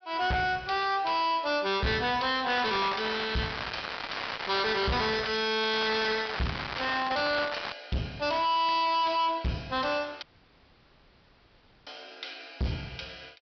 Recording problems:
treble cut off; nothing above 5.5 kHz
distortion; hard clipping, signal-to-distortion ratio 5 dB
crackle; from 2.5 to 5.5 s and from 5.5 to 7.5 s; loose cable, SNR 7 dB
dropout; at 10 s for 1.5 s

